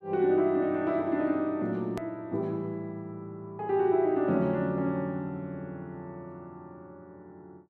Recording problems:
hard cut with a click; at 2 s

